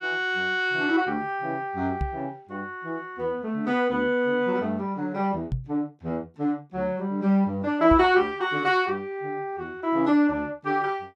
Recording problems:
knock on the microphone; at 2 s, at 5.5 s and at 8 s; peak +1 dB vs average level

